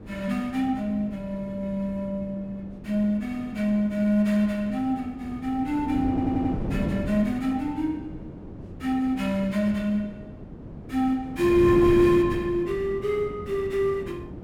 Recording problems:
wind noise; below 330 Hz, SNR 10 dB
audio stuttering; at 6 s

